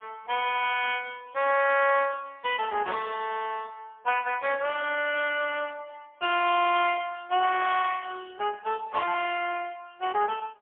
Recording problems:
phone line; 320 Hz to 3.4 kHz, AMR-NB, then MP3

